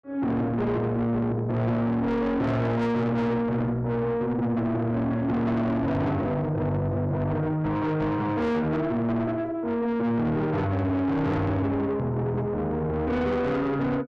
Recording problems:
distortion; soft clipping, signal-to-distortion ratio 8 dB

